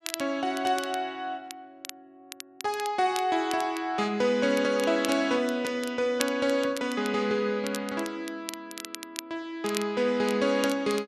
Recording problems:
crackle; vinyl, SNR 13 dB

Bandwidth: 12.5 kHz